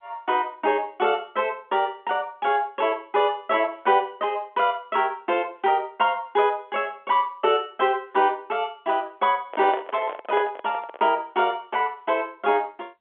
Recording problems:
phone line; 260 Hz to 3.4 kHz, G.711
handling noise; from 9.5 to 11 s; peak -2 dB vs average level

